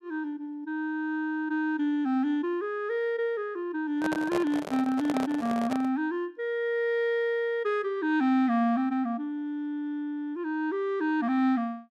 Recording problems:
handling noise; from 4 to 6 s; peak 0 dB vs average level

